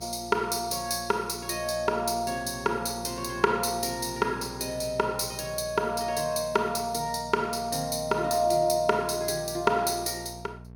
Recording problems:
electrical hum; 60 Hz, harmonics up to 900 Hz, SNR 18 dB

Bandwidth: 18 kHz